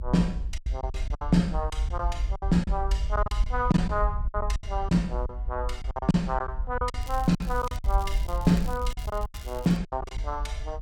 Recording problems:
rumble; below 58 Hz, SNR 4 dB
lost packets; 13% of the sound replaced, filled with silence
crackling; from 7 to 10 s; loose cable, SNR 19 dB

